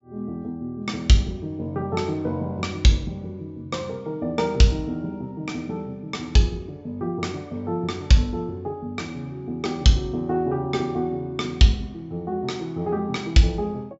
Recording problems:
low-pass filter; nothing above 8 kHz

